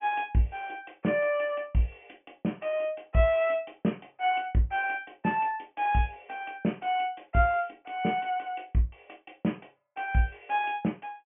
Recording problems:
low-pass filter; nothing above 3.2 kHz

